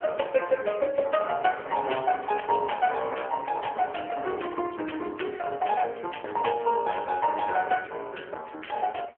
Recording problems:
phone line; 320 Hz to 3.2 kHz, AMR-NB

